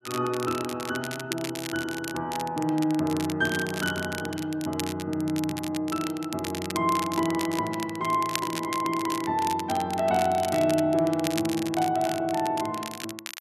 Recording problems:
crackling; vinyl, SNR 10 dB

